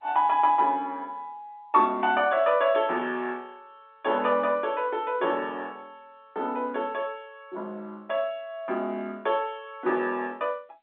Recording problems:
phone line; 240 Hz to 3.6 kHz, G.711

